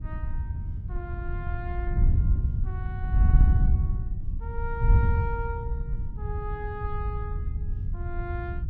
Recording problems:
wind noise; below 92 Hz, SNR -10 dB

